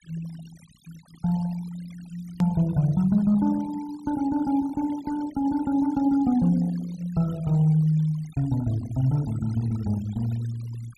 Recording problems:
denoising artefacts; signal-to-artefact ratio 22 dB
hard cut with a click; at 2.5 s

